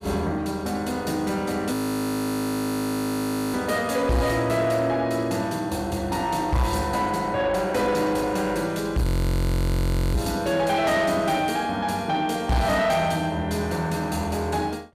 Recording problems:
distorted audio; soft clipping, signal-to-distortion ratio 11 dB
audio freezing; at 1.5 s for 2 s and at 9 s for 1 s

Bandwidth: 15.5 kHz